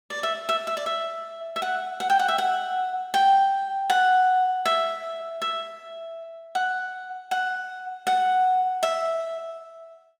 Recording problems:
none

